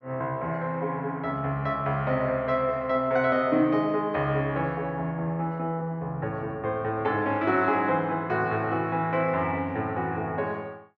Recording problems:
none

